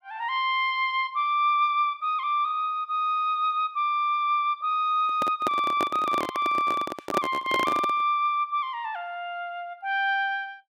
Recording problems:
handling noise; from 5 to 8 s; peak +2 dB vs average level

